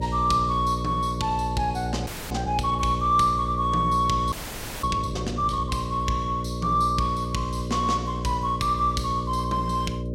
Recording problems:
mains hum; 60 Hz, harmonics up to 600 Hz, SNR 6 dB
audio freezing; at 2 s and at 4.5 s for 0.5 s

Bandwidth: 16 kHz